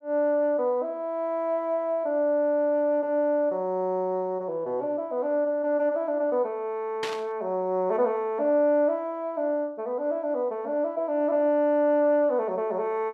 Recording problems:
burst of static; at 7 s; peak -3 dB vs average level

